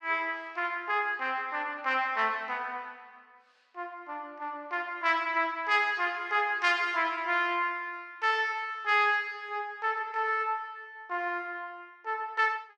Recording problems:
none

